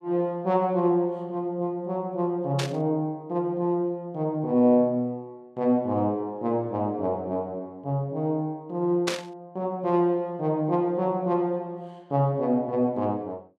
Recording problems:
static burst; at 2.5 s and at 9 s; peak +2 dB vs average level

